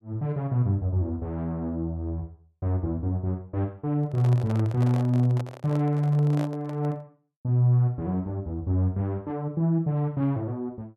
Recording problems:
microphone handling noise; from 4 to 7 s; peak -6 dB vs average level

